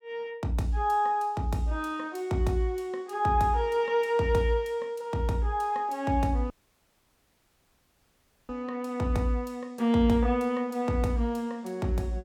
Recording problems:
audio cutting out; at 6.5 s for 2 s

